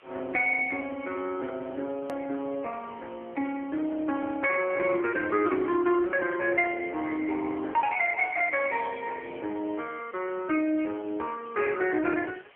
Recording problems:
telephone audio; 260 Hz to 3.3 kHz, AMR-NB
hiss; SNR 27 dB
click at an edit; at 2 s

